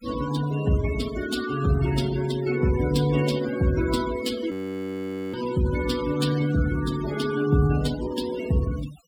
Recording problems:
noise reduction artefacts; signal-to-artefact ratio 13 dB
audio freezing; at 4.5 s for 1 s

